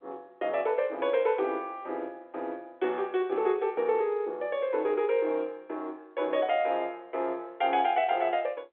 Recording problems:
telephone audio; 300 Hz to 3.5 kHz, G.711

